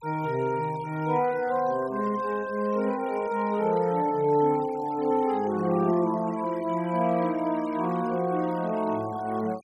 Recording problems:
denoising artefacts; signal-to-artefact ratio 22 dB

